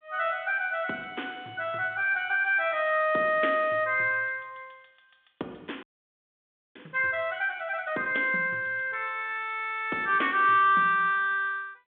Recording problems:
telephone audio; 240 Hz to 3.6 kHz, G.726
frozen audio; at 6 s for 1 s

